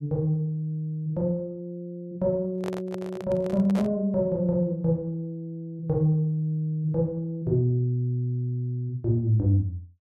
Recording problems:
handling noise; from 2.5 to 4 s; peak -4 dB vs average level

